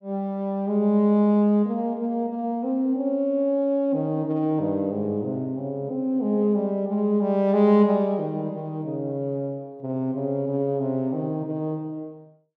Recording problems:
none

